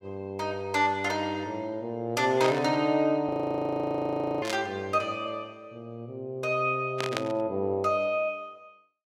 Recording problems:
static burst; at 2.5 s, at 4.5 s and at 7 s; peak +2 dB vs average level
frozen audio; at 3.5 s for 1 s

